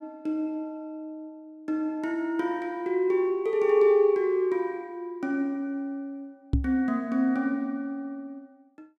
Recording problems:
microphone thump; at 6.5 s; peak +6 dB vs average level

